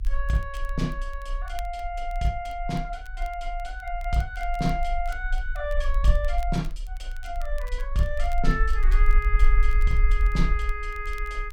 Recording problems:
rumble; below 42 Hz, SNR -1 dB
crackle; vinyl, SNR 24 dB

